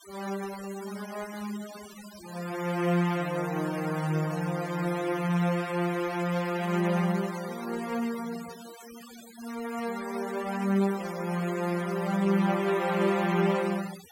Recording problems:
denoising artefacts; signal-to-artefact ratio 15 dB

